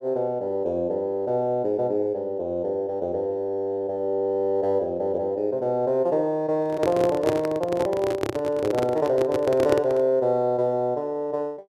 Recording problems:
microphone handling noise; from 6.5 to 10 s; peak +4 dB vs average level

